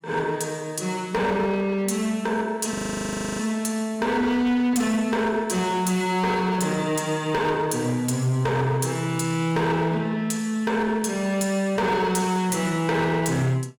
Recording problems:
distorted audio; hard clipping, signal-to-distortion ratio 12 dB
frozen audio; at 2.5 s for 0.5 s

